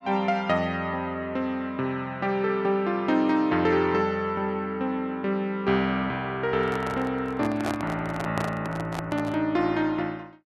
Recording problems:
handling noise; from 6.5 to 9.5 s; peak 0 dB vs average level

